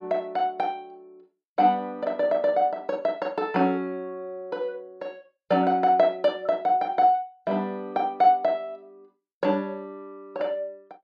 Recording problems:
none

